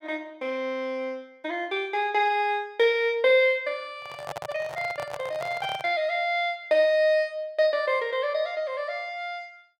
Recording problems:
microphone handling noise; from 4 to 6 s; peak -5 dB vs average level

